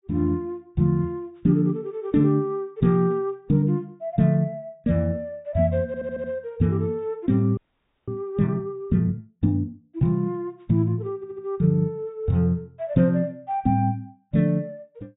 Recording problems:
treble missing; nothing above 4 kHz
audio stuttering; at 6 s and at 11 s
audio freezing; at 7.5 s for 0.5 s

